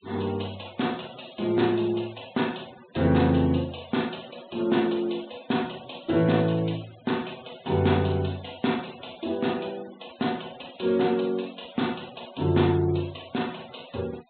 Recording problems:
low-pass filter; nothing above 4 kHz
denoising artefacts; signal-to-artefact ratio 21 dB

